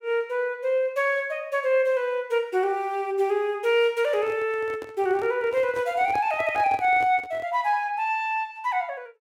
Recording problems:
microphone handling noise; from 4 to 7.5 s; peak -8 dB vs average level

